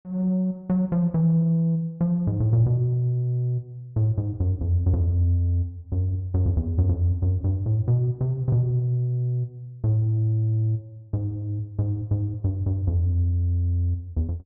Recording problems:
none

